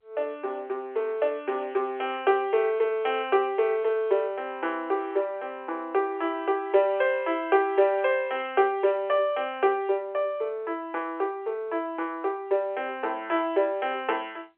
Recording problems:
phone line; 300 Hz to 3.4 kHz, G.711

